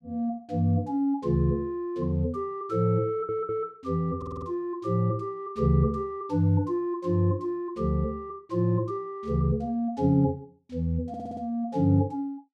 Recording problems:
stutter; at 3 s, at 4 s and at 11 s

